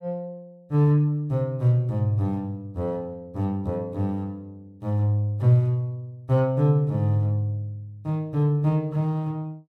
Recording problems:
none

